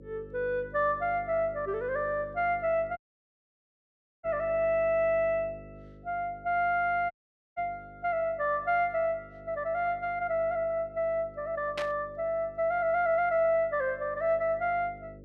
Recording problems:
hum; 50 Hz, harmonics up to 550 Hz, SNR 21 dB
audio cutting out; at 3 s for 1.5 s and at 7 s
burst of static; at 12 s; peak -3 dB vs average level

